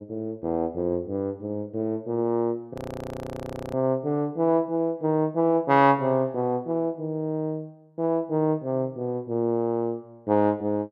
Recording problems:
frozen audio; at 2.5 s for 1 s

